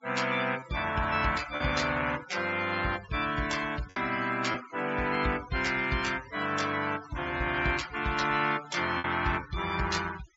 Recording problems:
treble missing; nothing above 7.5 kHz
denoising artefacts; signal-to-artefact ratio 14 dB
lost packets; 2% of the sound replaced, filled with repeated pitch periods

